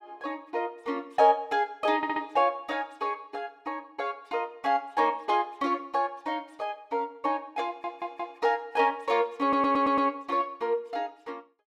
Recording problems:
audio stuttering; at 2 s, at 7.5 s and at 9.5 s

